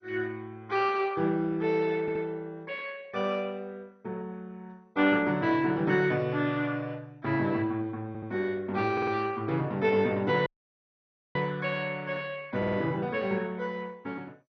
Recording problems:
codec artefacts; MP2, log-spectral distance 3 dB, nothing above 5.8 kHz
stutter; 4 times, first at 2 s
dropout; at 10 s for 1 s

